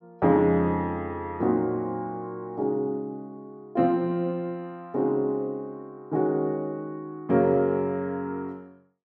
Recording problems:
none

